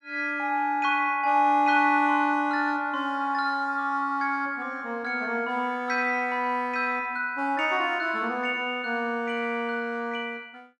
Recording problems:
none

